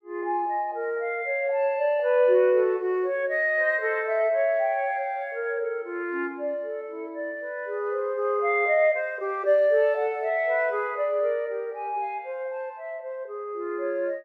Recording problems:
none

